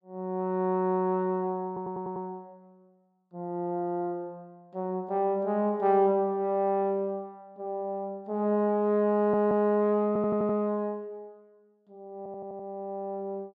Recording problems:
stutter; 4 times, first at 1.5 s

